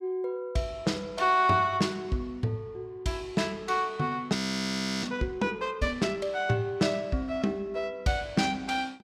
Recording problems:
frozen audio; at 4.5 s for 0.5 s

